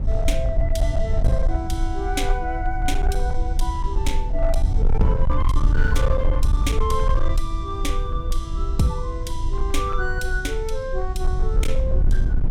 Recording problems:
distortion; hard clipping, signal-to-distortion ratio 10 dB
low-frequency rumble; below 58 Hz, strongest tone 20 Hz, SNR -3 dB

